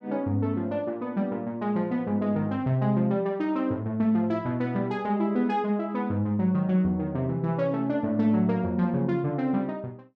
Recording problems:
none

